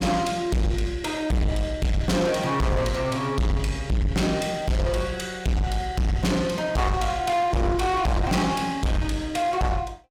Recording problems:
distortion; soft clipping, signal-to-distortion ratio 6 dB

